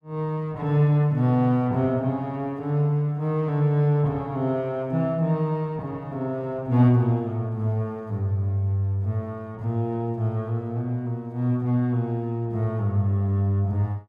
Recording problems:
none

